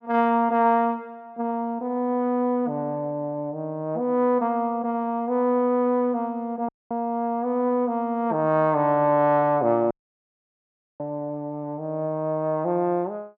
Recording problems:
treble cut off; nothing above 7.5 kHz
dropout; at 6.5 s and at 10 s for 1 s

